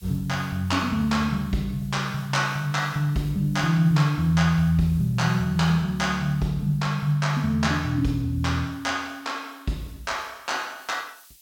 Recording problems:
hiss; SNR 27 dB

